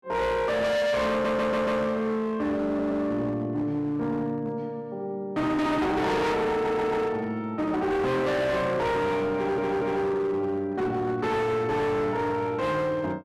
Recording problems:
distortion; hard clipping, signal-to-distortion ratio 6 dB
stutter; 4 times, first at 1 s

